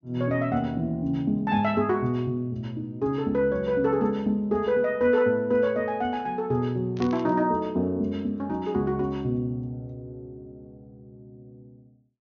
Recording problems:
treble missing; nothing above 6.6 kHz
static burst; at 7 s; peak -8 dB vs average level

